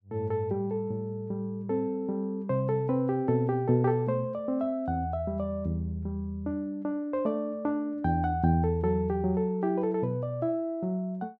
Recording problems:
none

